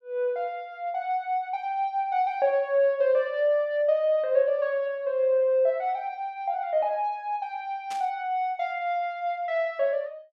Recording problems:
static burst; at 8 s; peak -10 dB vs average level

